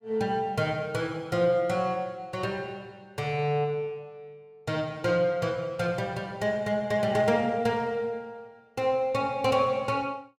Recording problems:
none

